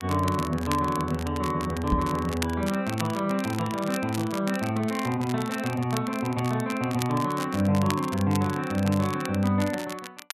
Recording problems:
crackle; vinyl, SNR 13 dB
microphone thump; at 2 s; peak +5 dB vs average level

